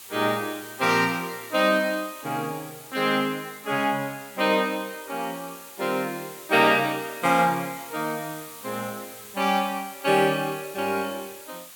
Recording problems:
background hiss; slope +1 dB per octave, SNR 16 dB

